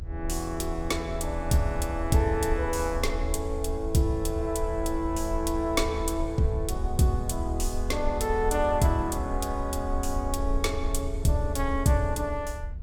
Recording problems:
low-frequency rumble; below 74 Hz, SNR 7 dB

